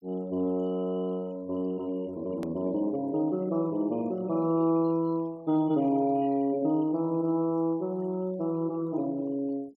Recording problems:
noise reduction artefacts; signal-to-artefact ratio 27 dB
hard cut with a click; at 2.5 s

